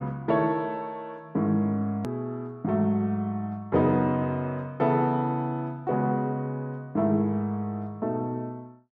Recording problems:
hard cut with a click; at 2 s

